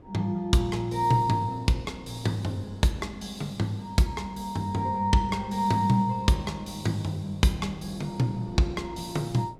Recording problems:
wind on the microphone; below 410 Hz, SNR 21 dB

